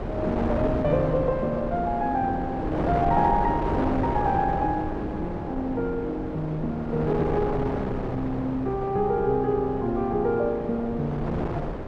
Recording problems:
wind noise; below 630 Hz, SNR 4 dB

